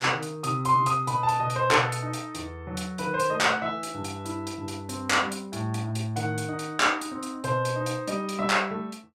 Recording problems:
none

